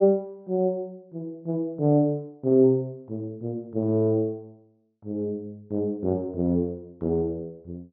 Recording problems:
treble missing; nothing above 6.3 kHz

